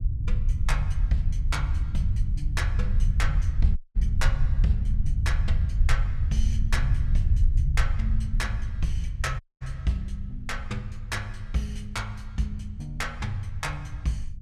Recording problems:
low-frequency rumble; below 74 Hz, SNR -5 dB
dropout; at 4 s and at 9.5 s

